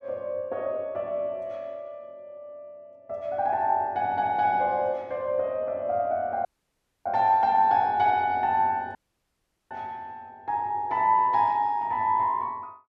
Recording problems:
dropout; at 6.5 s for 0.5 s and at 9 s for 1 s

